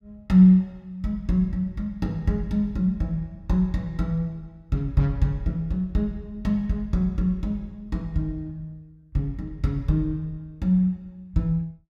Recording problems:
none

